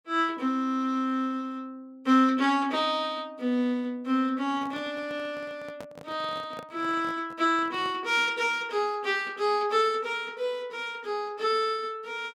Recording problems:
microphone handling noise; from 4.5 to 8 s; peak -9 dB vs average level

